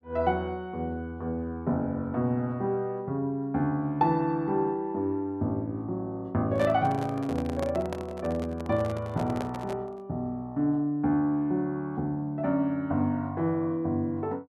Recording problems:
handling noise; from 6.5 to 10 s; peak -2 dB vs average level

